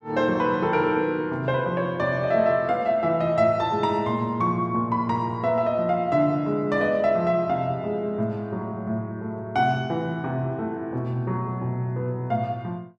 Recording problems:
none

